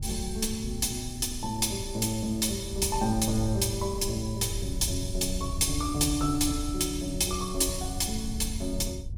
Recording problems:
wind on the microphone; below 94 Hz, SNR 8 dB

